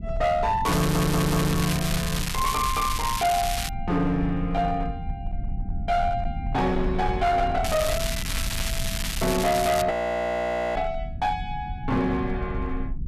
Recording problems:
distorted audio; hard clipping, signal-to-distortion ratio 11 dB
rumble; below 110 Hz, SNR 8 dB
crackling; from 0.5 to 3.5 s and from 7.5 to 10 s; loose cable, SNR 5 dB
stutter; at 1 s
frozen audio; at 10 s for 1 s

